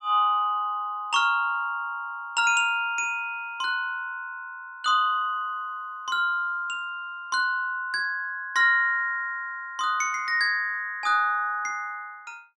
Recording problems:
none

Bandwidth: 13 kHz